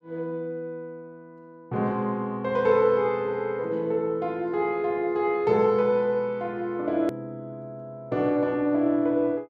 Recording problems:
click at an edit; at 7 s

